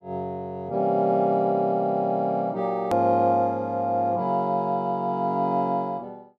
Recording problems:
hard cut with a click; at 3 s

